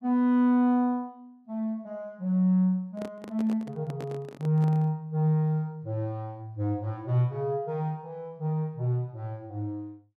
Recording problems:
handling noise; from 3 to 5 s; peak -8 dB vs average level

